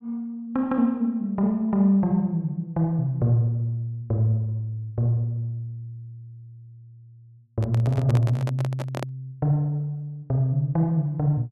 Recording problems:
microphone handling noise; from 7.5 to 9 s; peak -4 dB vs average level

